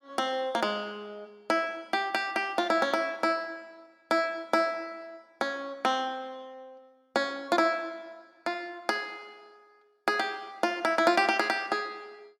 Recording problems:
none

